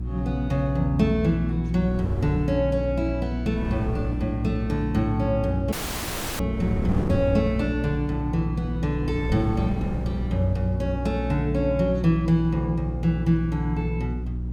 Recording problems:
hum; 60 Hz, harmonics up to 360 Hz, SNR 5 dB
wind noise; below 260 Hz, SNR 11 dB
dropout; at 5.5 s for 0.5 s

